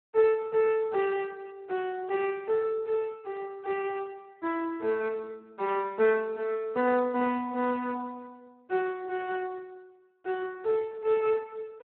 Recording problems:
phone line; 280 Hz to 3.5 kHz, Speex

